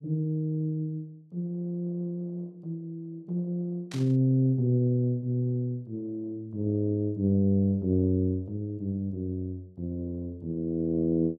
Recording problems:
burst of static; at 4 s; peak -10 dB vs average level

